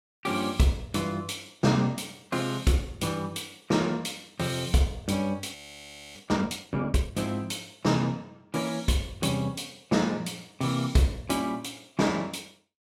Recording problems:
audio freezing; at 5.5 s for 0.5 s

